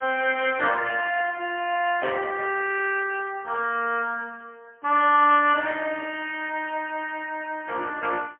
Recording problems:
phone line; 240 Hz to 3.1 kHz, AMR-NB, then MP3

